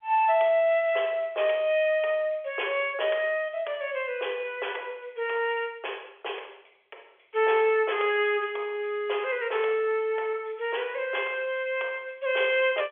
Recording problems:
phone line; 340 Hz to 3.4 kHz, G.711

